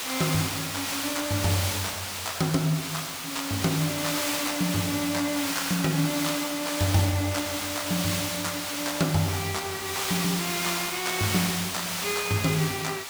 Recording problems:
background hiss; slope +1 dB per octave, SNR 1 dB

